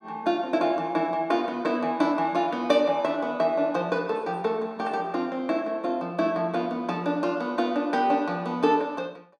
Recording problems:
none

